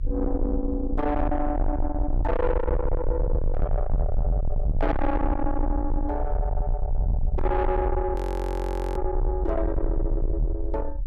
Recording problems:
distortion; soft clipping, signal-to-distortion ratio 6 dB
rumble; below 70 Hz, SNR 1 dB
frozen audio; at 8 s for 1 s

